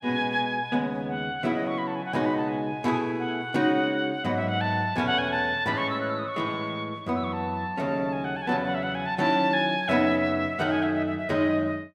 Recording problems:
none

